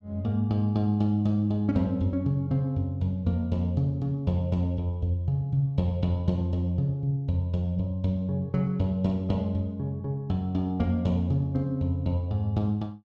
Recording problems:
none

